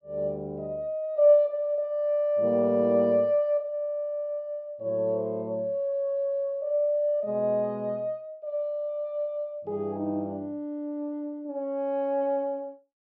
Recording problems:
none

